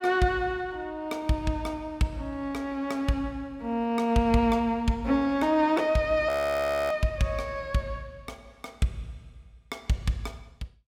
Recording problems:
audio freezing; at 6.5 s for 0.5 s

